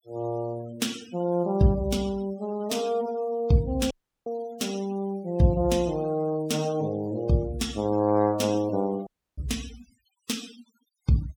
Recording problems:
denoising artefacts; signal-to-artefact ratio 20 dB
audio cutting out; at 4 s and at 9 s

